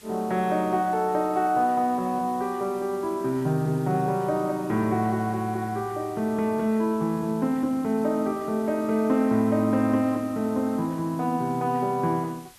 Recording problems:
background hiss; slope 0 dB per octave, SNR 24 dB

